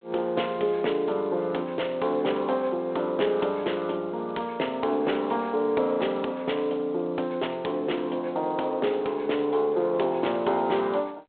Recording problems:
telephone audio; 320 Hz to 3.7 kHz, G.726

